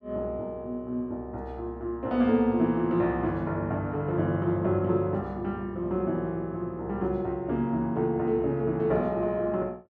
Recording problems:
none

